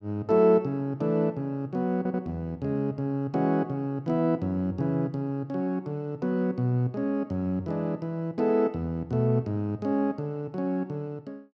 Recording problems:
stutter; at 2 s

